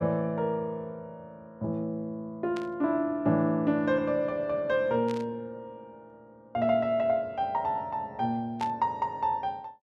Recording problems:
burst of static; at 2.5 s, at 5 s and at 8.5 s; peak -8 dB vs average level

